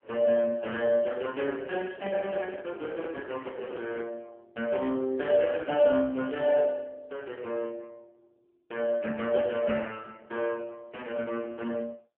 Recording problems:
telephone audio; 170 Hz to 3.2 kHz, AMR-NB
handling noise; from 2 to 4 s; peak -6 dB vs average level

